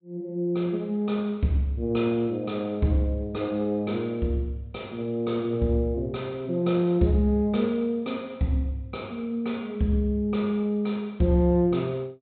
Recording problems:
treble cut off; nothing above 4 kHz

